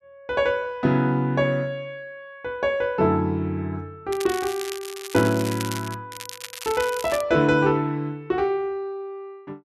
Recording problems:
crackle; from 4 to 6 s and from 6 to 7 s; loose cable, SNR 11 dB

